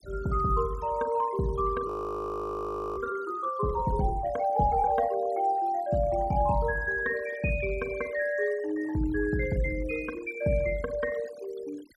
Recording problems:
noise reduction artefacts; signal-to-artefact ratio 20 dB
audio freezing; at 2 s for 1 s

